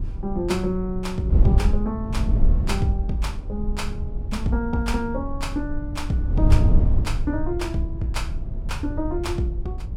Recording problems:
wind noise; below 84 Hz, SNR -2 dB

